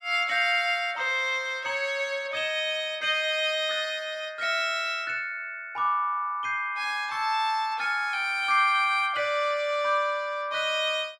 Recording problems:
none

